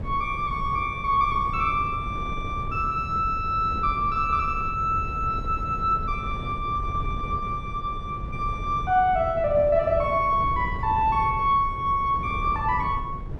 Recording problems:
wind noise; below 150 Hz, SNR 10 dB

